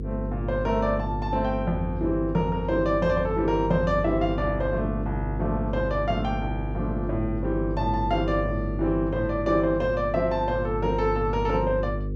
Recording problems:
electrical hum; 50 Hz, harmonics up to 500 Hz, SNR 5 dB

